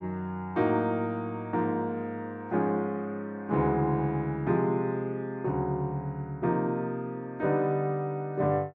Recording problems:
none

